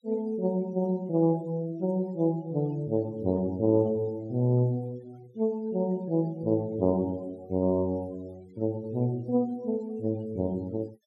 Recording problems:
noise reduction artefacts; signal-to-artefact ratio 27 dB

